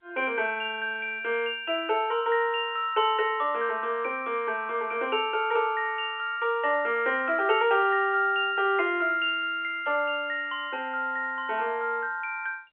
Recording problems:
phone line; 340 Hz to 3.4 kHz, G.711

